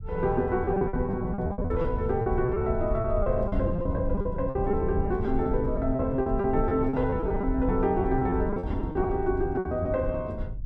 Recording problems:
low-frequency rumble; below 90 Hz, SNR 6 dB
lost packets; 14% of the sound replaced, filled with repeated pitch periods

